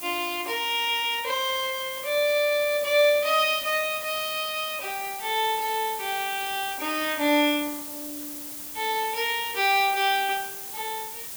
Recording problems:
hiss; slope 0 dB per octave, SNR 10 dB

